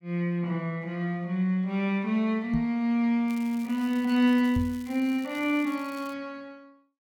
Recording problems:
microphone thump; at 2.5 s and at 4.5 s; peak 0 dB vs average level
crackle; from 3.5 to 6 s; loose cable, SNR 24 dB

